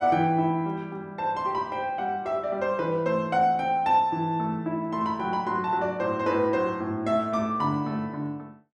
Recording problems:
none

